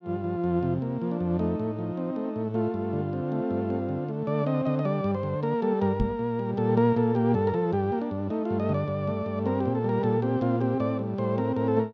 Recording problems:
microphone thump; at 6 s; peak +3 dB vs average level

